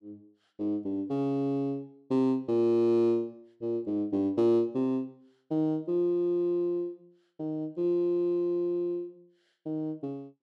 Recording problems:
none

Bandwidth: 12 kHz